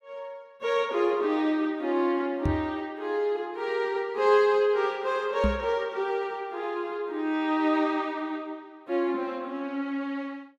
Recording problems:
microphone thump; at 2.5 s and at 5.5 s; peak +4 dB vs average level

